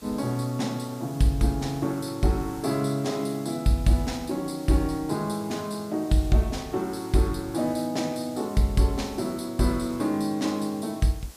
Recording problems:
background hiss; SNR 21 dB

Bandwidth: 15 kHz